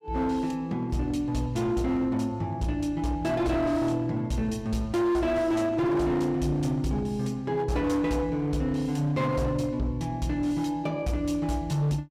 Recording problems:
distortion; hard clipping, signal-to-distortion ratio 11 dB

